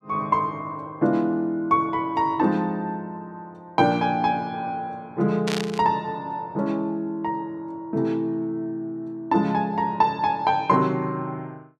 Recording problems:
burst of static; at 5.5 s; peak 0 dB vs average level

